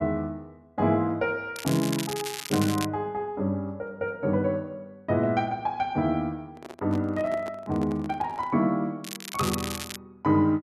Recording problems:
crackling; from 1.5 to 3 s and at 9 s; loose cable, SNR 8 dB
microphone handling noise; from 6.5 to 8.5 s; peak -8 dB vs average level

